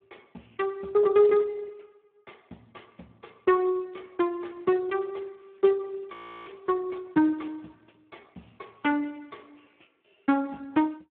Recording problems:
phone line; 170 Hz to 3.4 kHz, Speex
audio freezing; at 6 s

